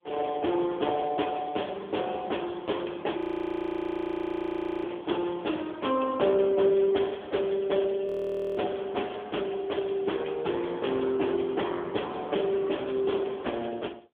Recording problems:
phone line; 260 Hz to 3.4 kHz, AMR-NB
frozen audio; at 3 s for 1.5 s and at 8 s for 0.5 s

